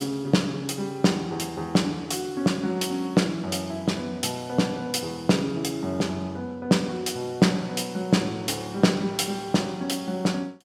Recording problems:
none

